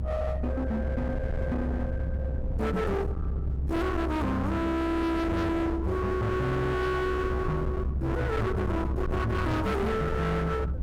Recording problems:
distortion; hard clipping, uneven, signal-to-distortion ratio 6 dB
low-frequency rumble; below 210 Hz, strongest tone 66 Hz, SNR 3 dB

